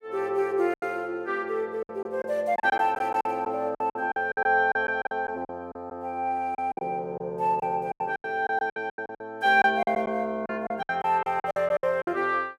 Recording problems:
lost packets; 14% of the sound replaced, filled with silence

